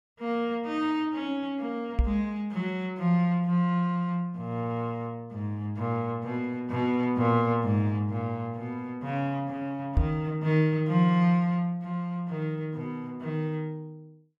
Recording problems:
microphone thump; at 2 s and at 10 s; peak +7 dB vs average level

